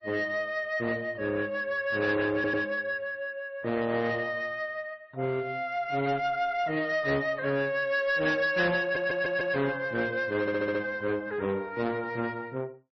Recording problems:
lossy codec; AAC, then MP3, log-spectral distance 2 dB, nothing above 5.7 kHz
distortion; soft clipping, signal-to-distortion ratio 11 dB
audio stuttering; at 2.5 s, at 9 s and at 10 s

